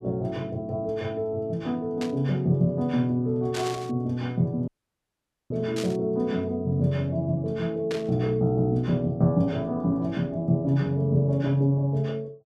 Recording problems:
burst of static; 4 times, first at 2 s; peak -5 dB vs average level
dropout; at 4.5 s for 1 s

